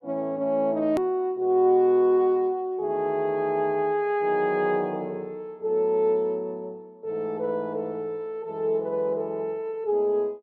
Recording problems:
hard cut with a click; at 1 s

